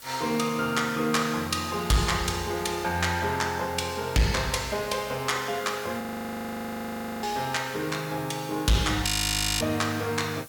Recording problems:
distorted audio; hard clipping, signal-to-distortion ratio 12 dB
background hiss; slope 0 dB per octave, SNR 18 dB
audio freezing; at 6 s for 1 s and at 9 s for 0.5 s

